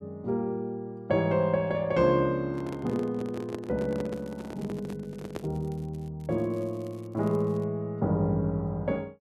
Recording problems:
microphone handling noise; from 2.5 to 5.5 s; peak -3 dB vs average level
crackle; from 4 to 6 s and from 6 to 7.5 s; loose cable, SNR 30 dB

